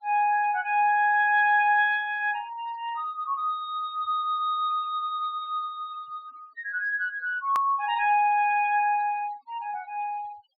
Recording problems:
treble cut off; nothing above 5.5 kHz
denoising artefacts; signal-to-artefact ratio 28 dB
hard cut with a click; at 7.5 s

